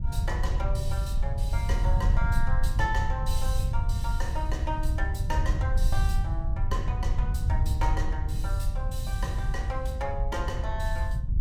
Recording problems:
wind on the microphone; below 82 Hz, SNR -6 dB

